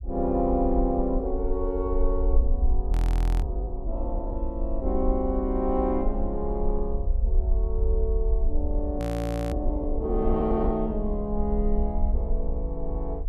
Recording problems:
low-frequency rumble; below 56 Hz, SNR 1 dB
audio freezing; at 3 s for 0.5 s and at 9 s for 0.5 s

